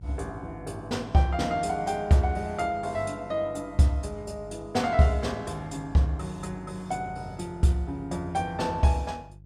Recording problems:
hum; 50 Hz, harmonics up to 350 Hz, SNR 19 dB

